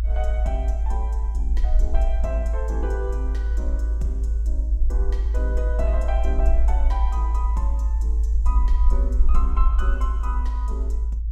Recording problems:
low-frequency rumble; below 56 Hz, strongest tone 54 Hz, SNR -10 dB

